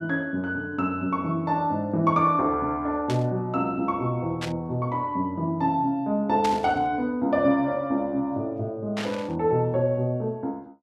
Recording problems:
burst of static; 4 times, first at 3 s; peak -3 dB vs average level

